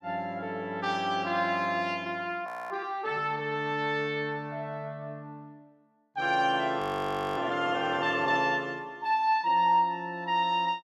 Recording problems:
audio freezing; at 2.5 s and at 7 s for 0.5 s

